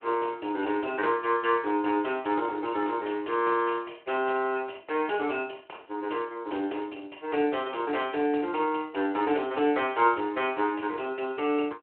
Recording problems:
telephone audio; 260 Hz to 3.2 kHz, Speex

